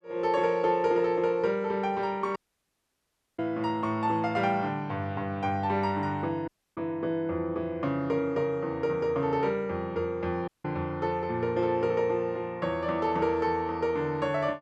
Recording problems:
dropout; at 2.5 s for 1 s, at 6.5 s and at 10 s

